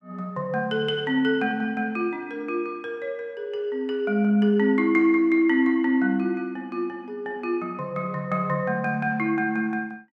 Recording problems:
none

